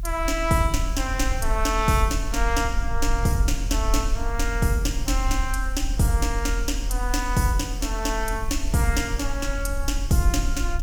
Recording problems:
hiss; SNR 30 dB
low-frequency rumble; below 44 Hz, strongest tone 40 Hz, SNR 4 dB

